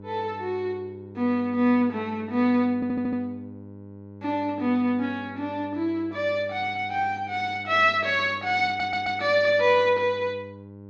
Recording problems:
hum; 50 Hz, harmonics up to 1 kHz, SNR 19 dB
audio stuttering; at 3 s and at 8.5 s

